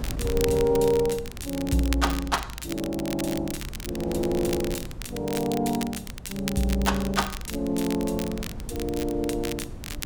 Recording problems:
wind noise; below 180 Hz, SNR 12 dB
crackling; vinyl, SNR 11 dB

